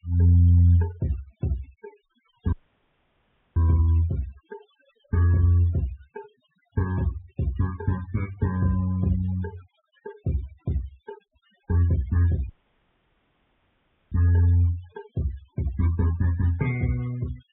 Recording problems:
treble missing; nothing above 3.7 kHz
noise reduction artefacts; signal-to-artefact ratio 23 dB
dropout; at 2.5 s for 1 s and at 12 s for 1.5 s

